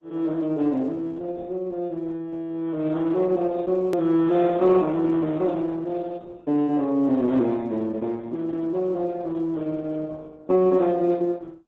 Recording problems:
lossy codec; AAC, then Opus, log-spectral distance 2 dB, nothing above 13.7 kHz
click at an edit; at 4 s

